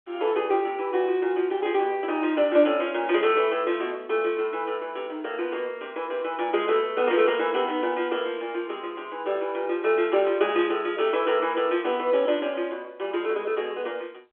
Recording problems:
phone line; 300 Hz to 3.5 kHz, G.711

